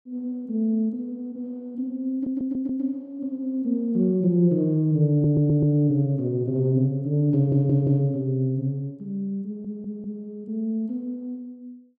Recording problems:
stutter; 4 times, first at 2 s

